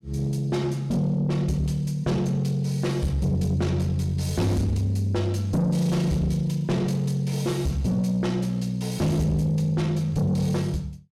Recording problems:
distorted audio; soft clipping, signal-to-distortion ratio 10 dB

